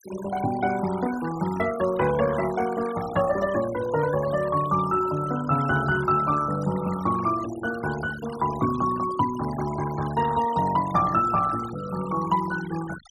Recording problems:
denoising artefacts; signal-to-artefact ratio 15 dB

